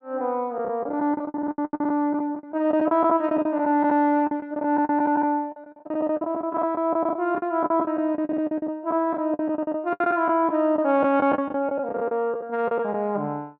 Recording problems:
packet loss; 16% of the sound replaced, filled with the last packet

